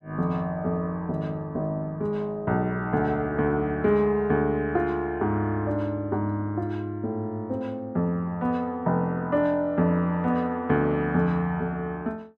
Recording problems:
none

